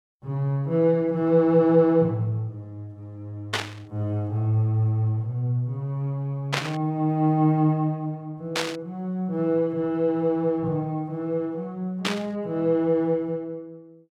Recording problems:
burst of static; 4 times, first at 3.5 s; peak +3 dB vs average level

